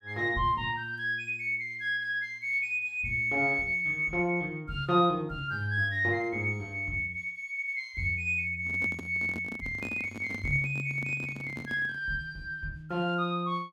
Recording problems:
handling noise; from 8.5 to 12 s; peak -5 dB vs average level

